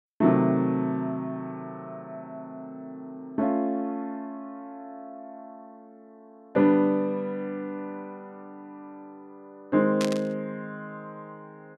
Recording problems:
static burst; at 10 s; peak -2 dB vs average level

